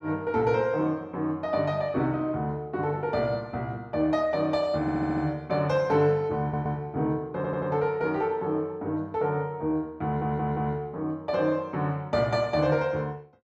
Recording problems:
audio stuttering; 4 times, first at 5 s

